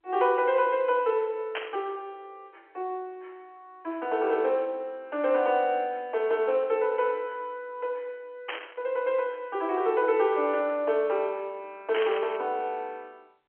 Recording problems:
telephone audio; 300 Hz to 3.3 kHz, G.711
burst of static; at 1.5 s, at 8.5 s and at 12 s; peak -1 dB vs average level

